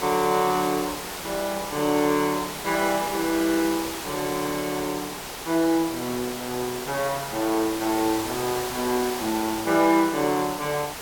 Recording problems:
hiss; slope -3 dB per octave, SNR 7 dB

